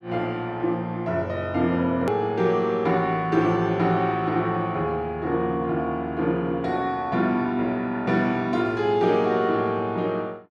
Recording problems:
edit click; at 2 s

